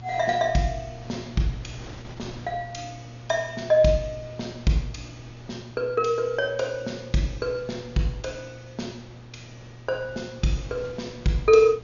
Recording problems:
treble missing; nothing above 6.9 kHz
hum; 60 Hz, harmonics up to 840 Hz, SNR 18 dB
wind noise; below 890 Hz, SNR 21 dB

